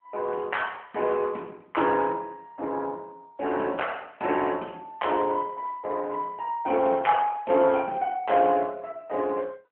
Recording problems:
telephone audio; 260 Hz to 3.1 kHz, AMR-NB

